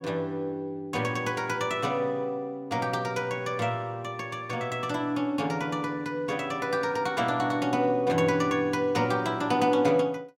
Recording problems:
none

